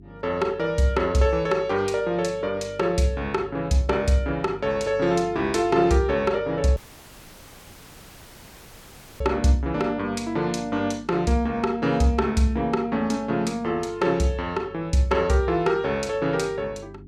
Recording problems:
hum; 50 Hz, harmonics up to 400 Hz, SNR 21 dB
dropout; at 7 s for 2.5 s

